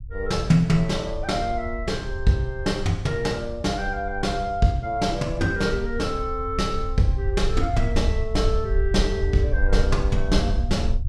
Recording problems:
low-frequency rumble; below 64 Hz, SNR 5 dB

